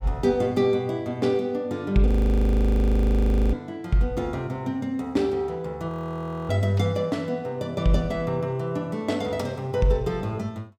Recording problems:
frozen audio; at 2 s for 1.5 s and at 6 s for 0.5 s

